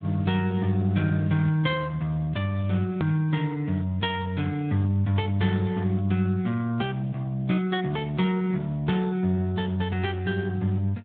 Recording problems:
treble missing; nothing above 4 kHz
codec artefacts; Speex, log-spectral distance 2 dB
edit click; at 3 s

